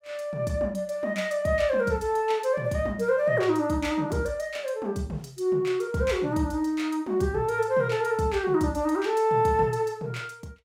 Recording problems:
none

